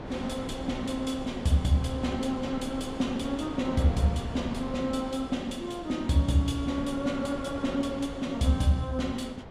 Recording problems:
wind on the microphone; below 660 Hz, SNR 11 dB

